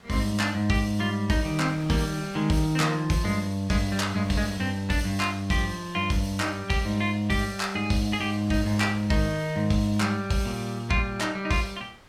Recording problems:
wind on the microphone; below 2.5 kHz, SNR 23 dB

